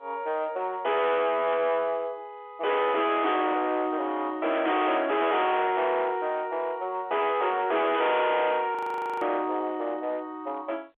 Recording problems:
phone line; 340 Hz to 3.8 kHz, G.711
distorted audio; hard clipping, uneven, signal-to-distortion ratio 6 dB
static burst; at 1.5 s, at 4.5 s and at 8 s; peak -10 dB vs average level
frozen audio; at 9 s

